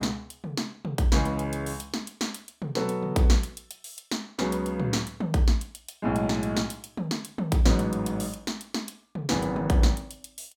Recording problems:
none

